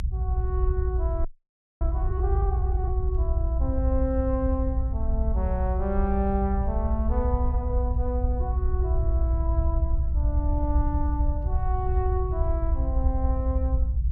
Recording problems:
rumble; below 70 Hz, SNR -5 dB
audio freezing; at 1.5 s for 0.5 s

